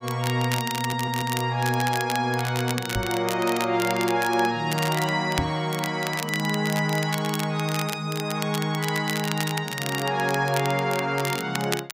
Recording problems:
crackle; vinyl, SNR 9 dB
audio stuttering; at 1 s
microphone bump; at 3 s and at 5.5 s; peak 0 dB vs average level

